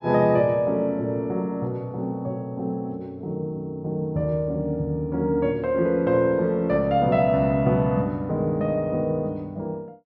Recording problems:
none

